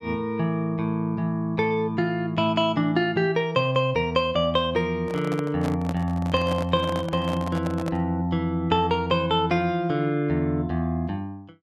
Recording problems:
handling noise; from 5 to 8 s; peak -4 dB vs average level

